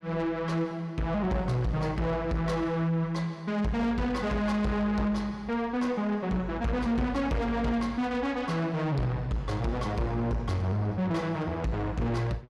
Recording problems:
distorted audio; soft clipping, signal-to-distortion ratio 10 dB

